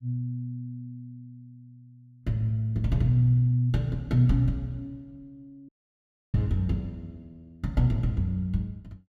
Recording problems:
audio cutting out; at 5.5 s for 0.5 s

